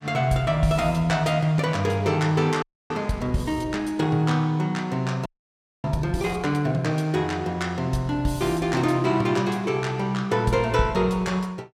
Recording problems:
frozen audio; at 2.5 s and at 5.5 s for 0.5 s

